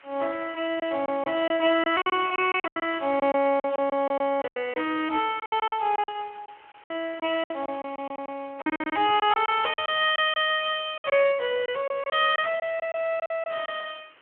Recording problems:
phone line; 280 Hz to 3.3 kHz, Speex
background hiss; SNR 27 dB
lost packets; 13% of the sound replaced, filled with silence

